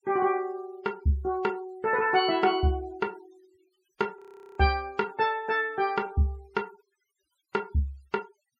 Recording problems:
denoising artefacts; signal-to-artefact ratio 26 dB
audio freezing; at 4 s

